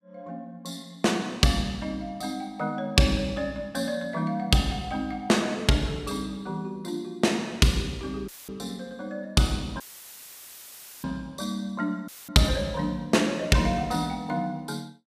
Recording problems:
audio cutting out; at 8.5 s, at 10 s for 1 s and at 12 s; filled with static

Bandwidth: 15 kHz